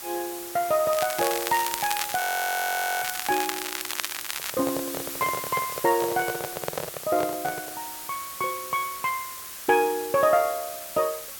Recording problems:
hiss; slope +1 dB per octave, SNR 7 dB
crackle; from 1 to 4.5 s; loose cable, SNR 5 dB
frozen audio; at 2 s for 1 s
handling noise; from 4.5 to 8 s; peak 0 dB vs average level

